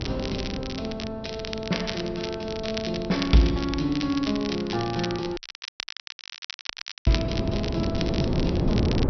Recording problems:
low-pass filter; nothing above 5.9 kHz
wind on the microphone; below 340 Hz, SNR 4 dB
crackling; vinyl, SNR 8 dB
audio cutting out; at 5.5 s for 1.5 s

